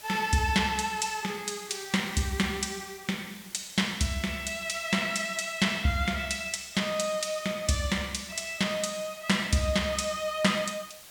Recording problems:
hiss; slope 0 dB per octave, SNR 19 dB

